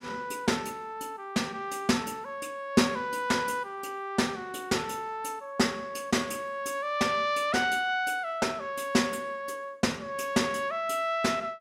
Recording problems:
none

